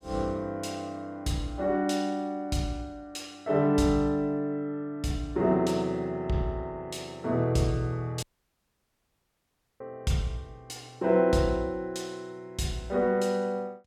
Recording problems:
dropout; at 8 s for 1.5 s

